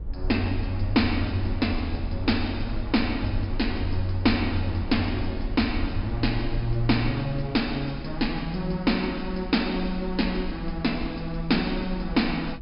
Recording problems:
treble missing; nothing above 5.5 kHz
low-frequency rumble; below 56 Hz, SNR 10 dB

